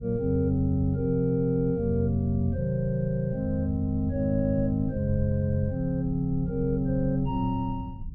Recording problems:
low-frequency rumble; below 96 Hz, SNR 13 dB

